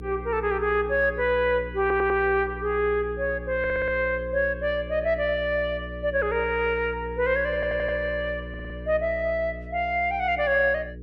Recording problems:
electrical hum; 60 Hz, harmonics up to 480 Hz, SNR 13 dB
stutter; 4 times, first at 2 s

